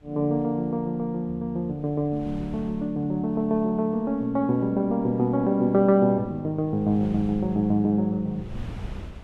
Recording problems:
wind on the microphone; below 160 Hz, SNR 20 dB

